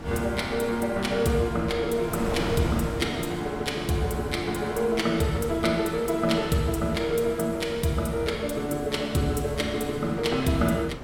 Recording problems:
wind noise; below 760 Hz, SNR 11 dB

